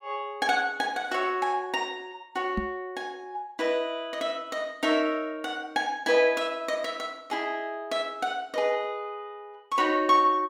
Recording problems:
knock on the microphone; at 2.5 s; peak +1 dB vs average level

